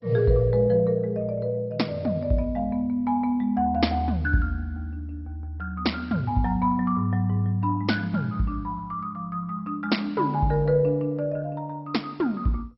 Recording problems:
lossy codec; MP2, log-spectral distance 2 dB, nothing above 5.5 kHz

